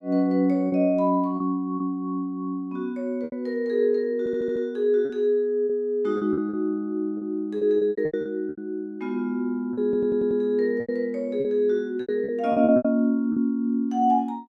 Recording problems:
lost packets; 9% of the sound replaced, filled with repeated pitch periods
audio stuttering; at 4 s and at 10 s

